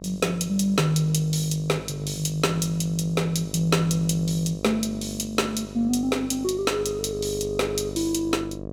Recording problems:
hum; 50 Hz, harmonics up to 750 Hz, SNR 12 dB

